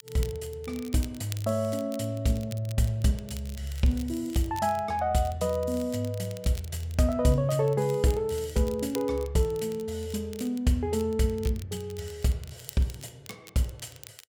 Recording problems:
crackle; vinyl, SNR 19 dB

